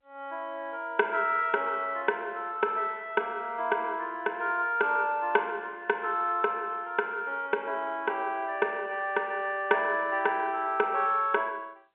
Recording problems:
phone line; 280 Hz to 3.3 kHz, G.711

